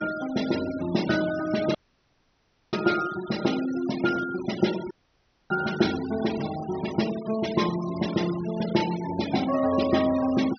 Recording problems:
treble cut off; nothing above 5.9 kHz
noise reduction artefacts; signal-to-artefact ratio 13 dB
dropout; at 2 s for 1 s and at 5 s for 0.5 s

